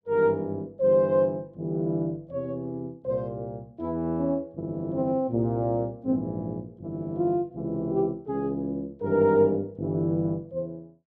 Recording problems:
none

